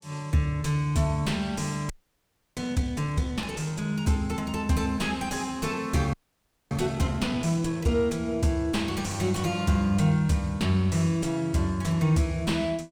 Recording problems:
distortion; soft clipping, signal-to-distortion ratio 9 dB
audio freezing; at 2 s for 0.5 s and at 6 s for 0.5 s

